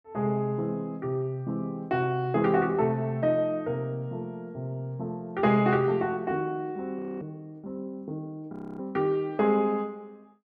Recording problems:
audio freezing; at 7 s and at 8.5 s

